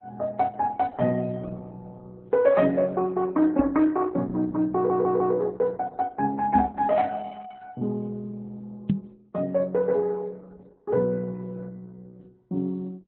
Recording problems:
lossy compression; MP3, then Opus, log-spectral distance 2 dB
microphone bump; at 3.5 s, at 6.5 s and at 9 s; peak +6 dB vs average level
stutter; at 5 s

